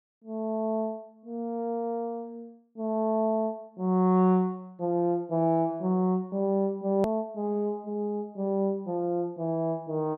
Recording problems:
click at an edit; at 7 s

